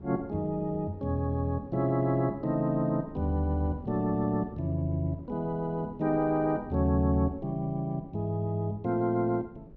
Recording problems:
wind noise; below 270 Hz, SNR 20 dB

